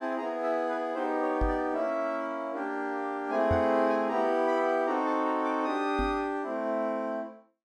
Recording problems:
microphone bump; at 1.5 s, at 3.5 s and at 6 s; peak +1 dB vs average level

